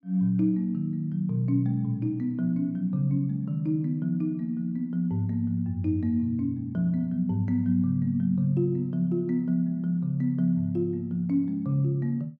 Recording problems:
none

